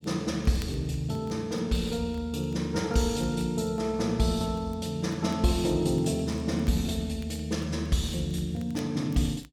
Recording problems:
crackle; vinyl, SNR 27 dB

